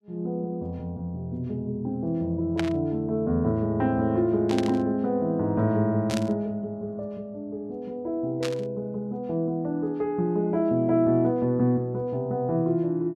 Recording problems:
burst of static; 4 times, first at 2.5 s; peak -2 dB vs average level

